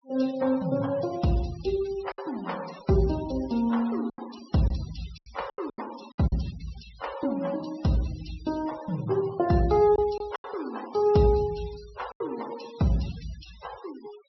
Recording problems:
treble missing; nothing above 5.5 kHz
noise reduction artefacts; signal-to-artefact ratio 18 dB
lost packets; 5% of the sound replaced, filled with silence

